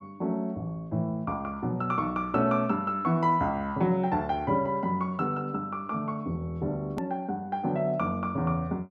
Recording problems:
hard cut with a click; at 7 s

